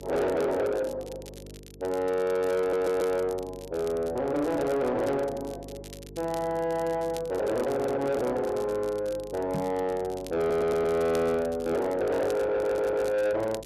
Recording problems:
distorted audio; soft clipping, signal-to-distortion ratio 10 dB
hum; 50 Hz, harmonics up to 450 Hz, SNR 20 dB
crackle; vinyl, SNR 21 dB
stutter; 4 times, first at 2.5 s
microphone bump; at 9.5 s; peak -2 dB vs average level

